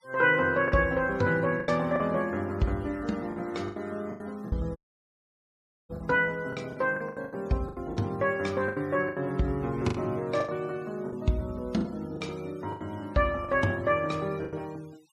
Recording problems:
noise reduction artefacts; signal-to-artefact ratio 26 dB
lost packets; 11% of the sound replaced, filled with the last packet
dropout; at 5 s for 1 s

